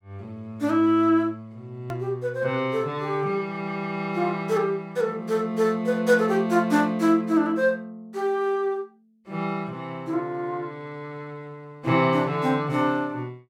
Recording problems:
edit click; at 2 s

